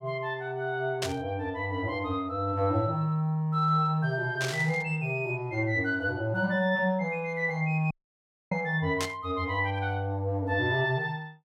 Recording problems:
static burst; at 1 s, at 4.5 s and at 9 s; peak +1 dB vs average level
dropout; at 8 s for 0.5 s

